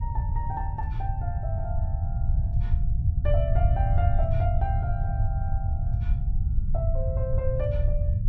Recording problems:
rumble; below 98 Hz, SNR -8 dB

